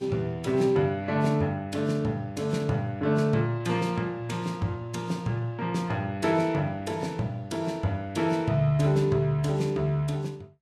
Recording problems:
codec artefacts; Vorbis, log-spectral distance 2 dB, nothing above 12.3 kHz

